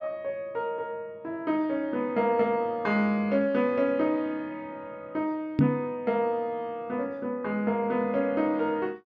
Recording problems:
microphone thump; at 5.5 s; peak +8 dB vs average level

